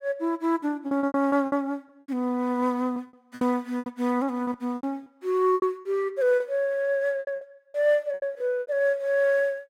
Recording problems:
lost packets; 13% of the sound replaced, filled with repeated pitch periods

